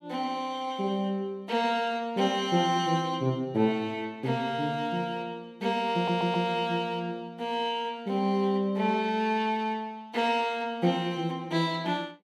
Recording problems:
stutter; at 6 s

